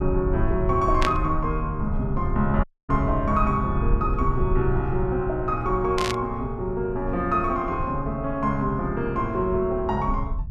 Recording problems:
rumble; below 78 Hz, SNR 6 dB
static burst; at 1 s and at 6 s; peak +3 dB vs average level
dropout; at 2.5 s

